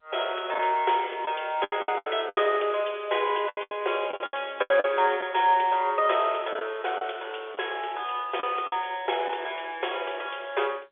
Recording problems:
phone line; 320 Hz to 3.5 kHz, G.711
packet loss; 9% of the sound replaced, filled with the last packet

